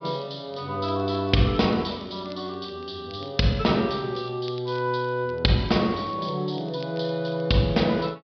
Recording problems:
treble missing; nothing above 5.5 kHz
crackling; vinyl, SNR 27 dB

